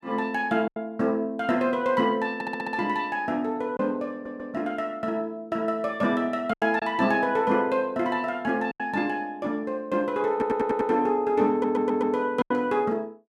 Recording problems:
lost packets; 3% of the sound replaced, filled with silence
stutter; 4 times, first at 2.5 s

